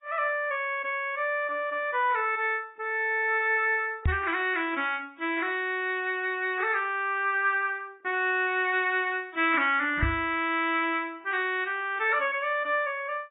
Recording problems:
codec artefacts; AAC, log-spectral distance 2 dB, nothing above 3.7 kHz
knock on the microphone; at 4 s and at 10 s; peak +4 dB vs average level

